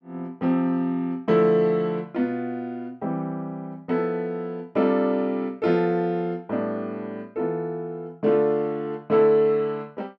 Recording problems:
none

